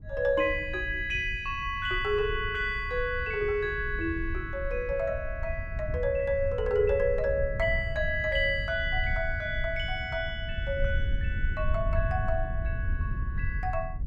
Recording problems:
low-frequency rumble; below 84 Hz, SNR 6 dB

